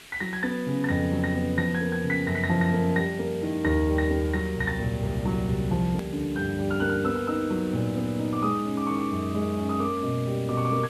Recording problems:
hiss; SNR 19 dB
click at an edit; at 6 s

